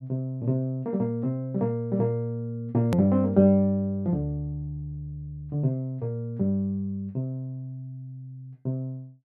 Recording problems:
hard cut with a click; at 3 s

